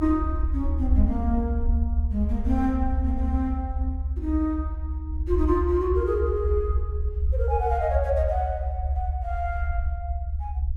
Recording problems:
low-frequency rumble; below 72 Hz, strongest tone 70 Hz, SNR 0 dB

